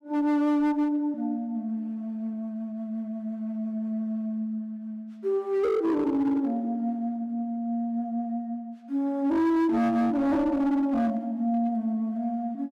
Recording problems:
distortion; hard clipping, signal-to-distortion ratio 12 dB

